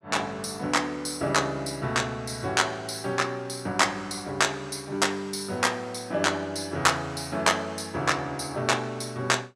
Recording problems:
none

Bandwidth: 15 kHz